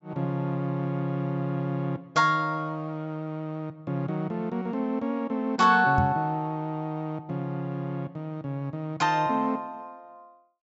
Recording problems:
treble cut off; nothing above 8 kHz
knock on the microphone; at 6 s; peak +6 dB vs average level

